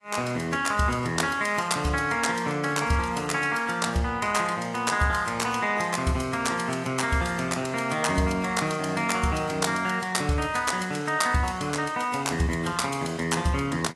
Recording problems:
lossy codec; AAC, log-spectral distance 4 dB, nothing above 11.6 kHz

